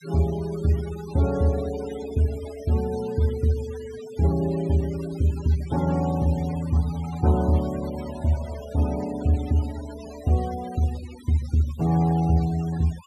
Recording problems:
noise reduction artefacts; signal-to-artefact ratio 18 dB

